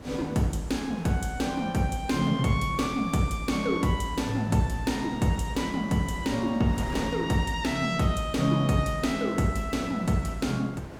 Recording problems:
wind noise; below 700 Hz, SNR 15 dB

